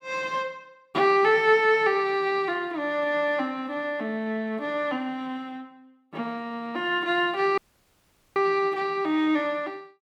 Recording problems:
audio cutting out; at 7.5 s for 1 s

